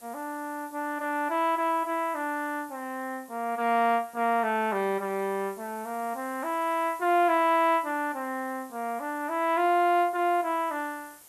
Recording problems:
background hiss; slope -2 dB per octave, SNR 23 dB

